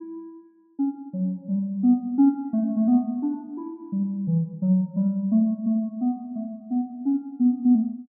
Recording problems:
none

